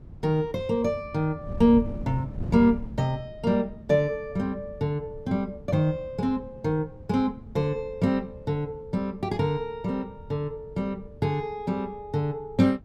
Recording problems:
wind on the microphone; below 170 Hz, SNR 15 dB

